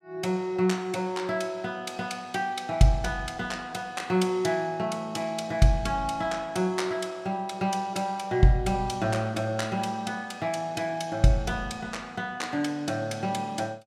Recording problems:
none

